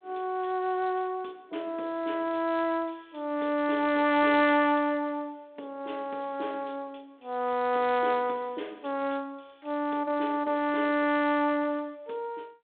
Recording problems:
phone line; 220 Hz to 3.9 kHz, G.726

